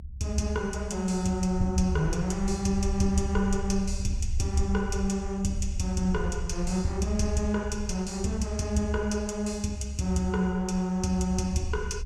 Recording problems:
rumble; below 68 Hz, SNR 9 dB

